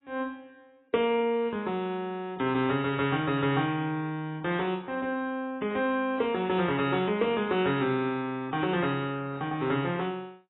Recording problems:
codec artefacts; AAC, log-spectral distance 2 dB, nothing above 3.3 kHz

